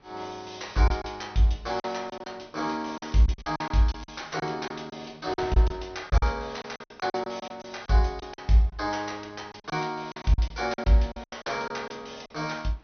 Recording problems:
treble cut off; nothing above 6.2 kHz
wind on the microphone; below 1.3 kHz, SNR 26 dB
lost packets; 11% of the sound replaced, filled with silence
crackling; at 3 s and at 4 s; loose cable, SNR 26 dB

